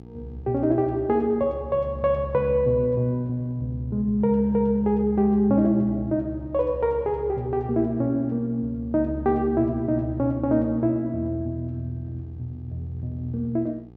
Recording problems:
mains hum; 60 Hz, harmonics up to 900 Hz, SNR 24 dB

